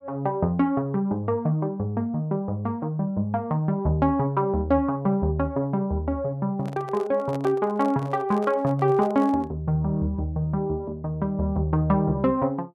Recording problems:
handling noise; from 6.5 to 9.5 s; peak -9 dB vs average level

